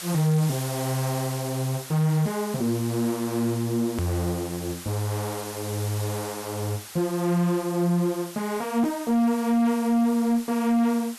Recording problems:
distortion; hard clipping, signal-to-distortion ratio 11 dB
background hiss; slope +1 dB per octave, SNR 12 dB
hard cut with a click; at 4 s

